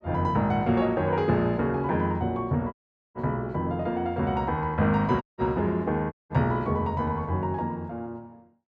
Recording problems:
dropout; at 2.5 s, at 5 s and at 6 s

